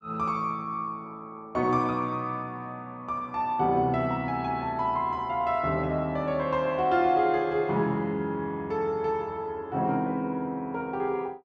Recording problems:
none

